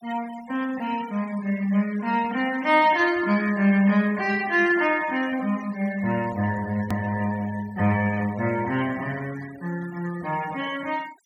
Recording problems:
noise reduction artefacts; signal-to-artefact ratio 19 dB
edit click; at 7 s

